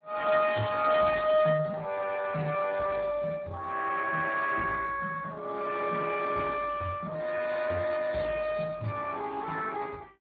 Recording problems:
lossy codec; AAC, then Speex, log-spectral distance 4 dB

